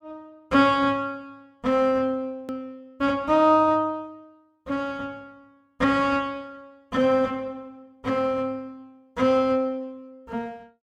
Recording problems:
click at an edit; at 2.5 s

